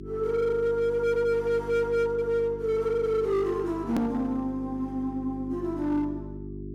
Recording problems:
distorted audio; hard clipping, signal-to-distortion ratio 10 dB
hum; 50 Hz, harmonics up to 400 Hz, SNR 12 dB
click at an edit; at 4 s

